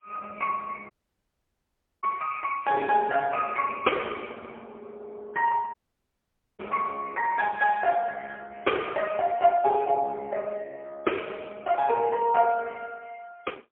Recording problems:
telephone audio; 320 Hz to 2.3 kHz, AMR-NB, then MP3
dropout; at 1 s for 1 s and at 5.5 s for 1 s

